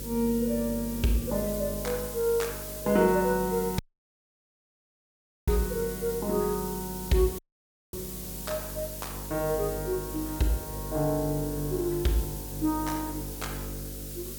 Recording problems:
mains hum; 50 Hz, harmonics up to 550 Hz, SNR 11 dB
background hiss; slope +3 dB per octave, SNR 9 dB
dropout; at 4 s for 1.5 s and at 7.5 s for 0.5 s

